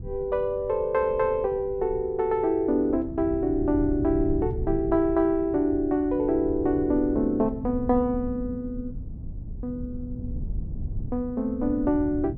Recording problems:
rumble; below 120 Hz, SNR 12 dB

